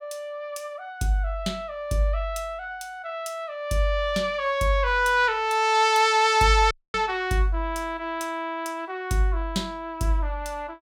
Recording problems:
audio cutting out; at 6.5 s

